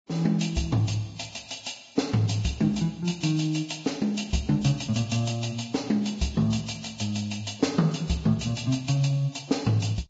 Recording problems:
codec artefacts; Vorbis, log-spectral distance 7 dB, nothing above 7.6 kHz

